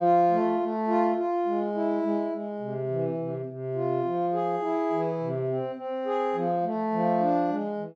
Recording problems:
none

